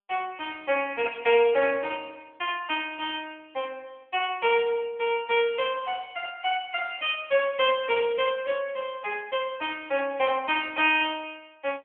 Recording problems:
phone line; 340 Hz to 3.3 kHz, AMR-NB

